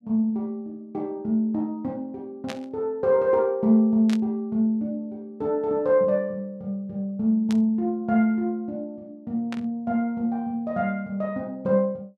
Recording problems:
static burst; 4 times, first at 2.5 s; peak -7 dB vs average level

